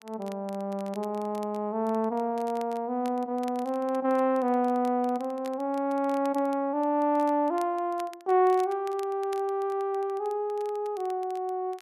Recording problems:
crackling; vinyl, SNR 25 dB

